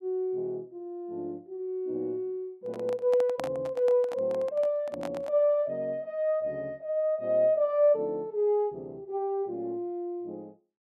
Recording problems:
handling noise; from 2.5 to 5.5 s; peak -3 dB vs average level

